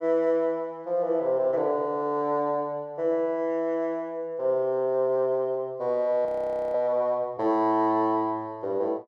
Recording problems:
frozen audio; at 6.5 s

